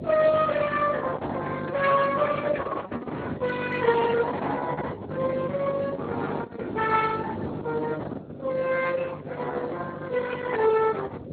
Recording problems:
codec artefacts; Opus, then Speex, log-spectral distance 5 dB
hum; 50 Hz, harmonics up to 700 Hz, SNR 10 dB

